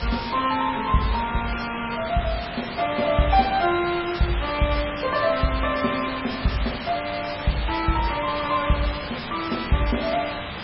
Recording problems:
lossy codec; MP3, log-spectral distance 14 dB, nothing above 5.5 kHz
hiss; SNR 7 dB
crackle; from 3.5 to 5 s and from 6.5 to 9 s; loose cable, SNR 28 dB

